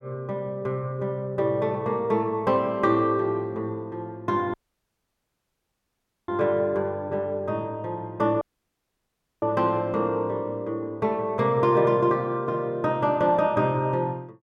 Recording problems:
audio cutting out; at 4.5 s for 1.5 s and at 8.5 s for 1 s

